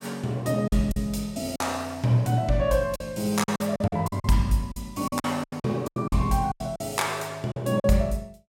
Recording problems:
lost packets; 12% of the sound replaced, filled with silence

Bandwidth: 17 kHz